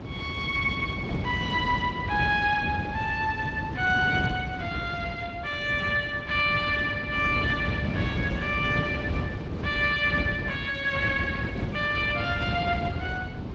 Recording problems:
lossy codec; Speex, log-spectral distance 3 dB
rumble; below 340 Hz, SNR 5 dB

